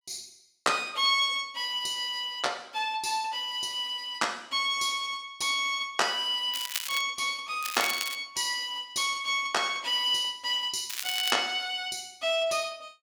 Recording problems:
crackle; at 6.5 s, at 7.5 s and at 11 s; loose cable, SNR 7 dB

